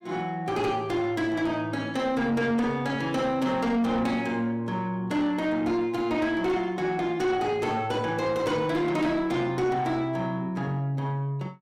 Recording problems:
distortion; soft clipping, signal-to-distortion ratio 10 dB

